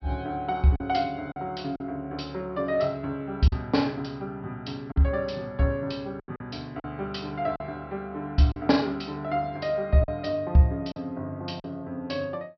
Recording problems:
treble cut off; nothing above 5.5 kHz
packet loss; 4% of the sound replaced, filled with silence

